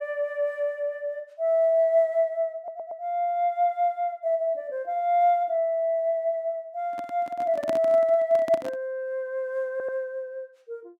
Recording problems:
audio stuttering; at 2.5 s and at 9.5 s
handling noise; from 7 to 9 s; peak -3 dB vs average level

